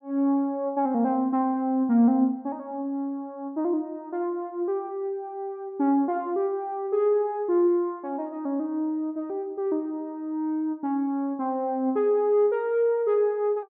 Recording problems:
none

